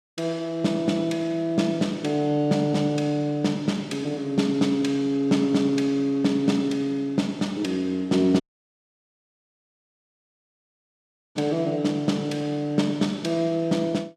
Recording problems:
audio cutting out; at 8.5 s for 3 s

